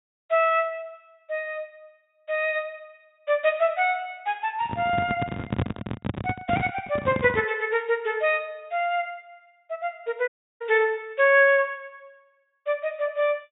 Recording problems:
treble cut off; nothing above 4 kHz
handling noise; from 4.5 to 7.5 s; peak +2 dB vs average level
audio cutting out; at 10 s

